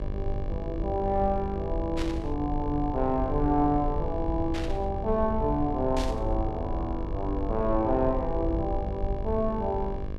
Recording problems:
hum; 50 Hz, harmonics up to 2.3 kHz, SNR 11 dB
low-frequency rumble; below 72 Hz, SNR 6 dB
static burst; at 2 s, at 4.5 s and at 6 s; peak -5 dB vs average level

